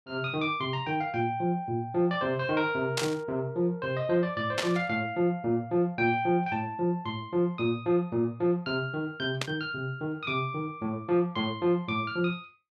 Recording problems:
burst of static; at 3 s, at 4.5 s and at 9.5 s; peak +4 dB vs average level

